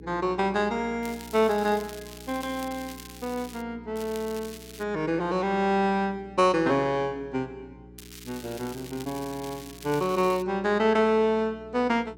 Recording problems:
hum; 60 Hz, harmonics up to 420 Hz, SNR 21 dB
crackle; from 1 to 3.5 s, at 4 s and from 8 to 10 s; loose cable, SNR 18 dB

